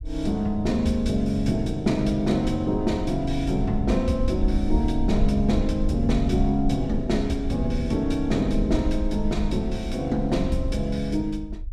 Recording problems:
low-frequency rumble; below 58 Hz, SNR 7 dB

